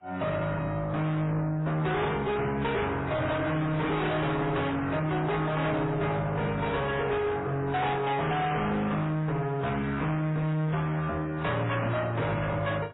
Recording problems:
lossy compression; MP3, then AAC, log-spectral distance 3 dB, nothing above 3.8 kHz
distortion; soft clipping, signal-to-distortion ratio 6 dB

